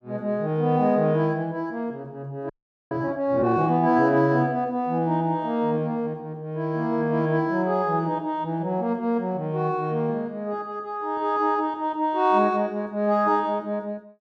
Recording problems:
frozen audio; at 2.5 s

